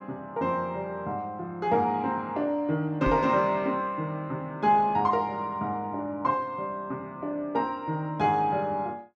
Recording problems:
knock on the microphone; at 3 s; peak 0 dB vs average level

